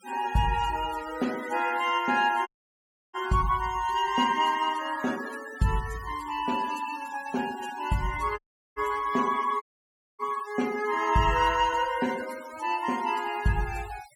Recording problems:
noise reduction artefacts; signal-to-artefact ratio 18 dB
dropout; at 2.5 s for 0.5 s, at 8.5 s and at 9.5 s for 0.5 s

